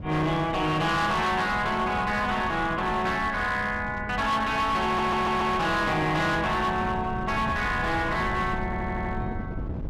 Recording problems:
distortion; hard clipping, signal-to-distortion ratio 10 dB
wind on the microphone; below 230 Hz, SNR 11 dB
stutter; at 5 s and at 8.5 s

